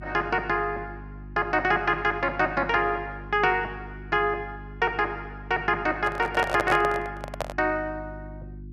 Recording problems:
electrical hum; 50 Hz, harmonics up to 350 Hz, SNR 16 dB
microphone handling noise; from 6 to 7.5 s; peak +1 dB vs average level

